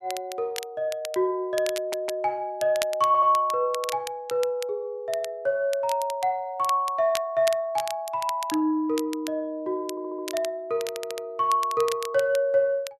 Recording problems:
crackle; vinyl, SNR 13 dB
audio stuttering; 4 times, first at 2 s

